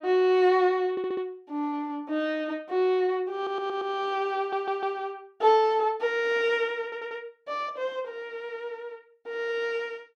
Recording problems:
audio stuttering; 4 times, first at 1 s

